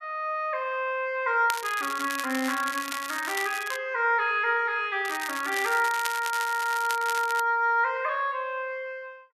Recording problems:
crackling; from 1.5 to 4 s and from 5 to 7.5 s; loose cable, SNR 10 dB

